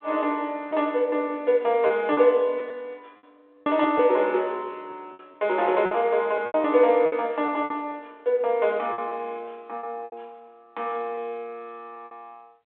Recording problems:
telephone audio; 320 Hz to 3.9 kHz, G.726
packet loss; 8% of the sound replaced, filled with repeated pitch periods

